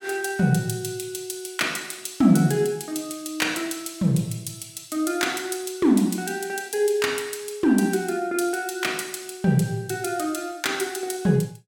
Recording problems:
none

